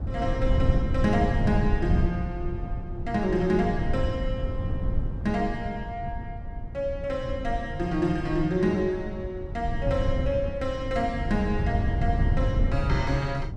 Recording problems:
low-frequency rumble; below 120 Hz, SNR 1 dB

